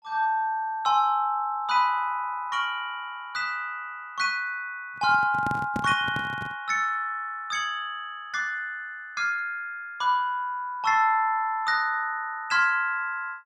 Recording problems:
microphone handling noise; from 5 to 6.5 s; peak -1 dB vs average level

